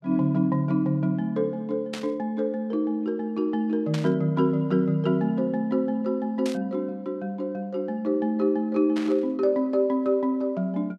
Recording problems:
static burst; 4 times, first at 2 s; peak -5 dB vs average level

